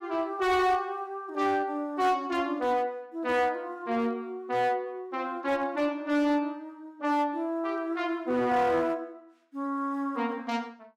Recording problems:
distorted audio; hard clipping, uneven, signal-to-distortion ratio 11 dB

